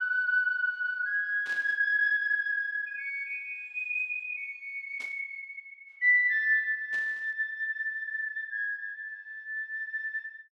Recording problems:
static burst; at 1.5 s, at 5 s and at 7 s; peak -14 dB vs average level

